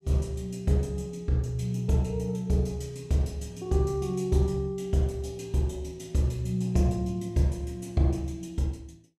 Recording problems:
none

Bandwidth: 14.5 kHz